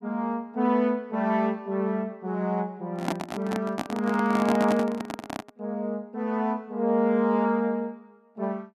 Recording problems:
microphone handling noise; from 3 to 5.5 s; peak +2 dB vs average level

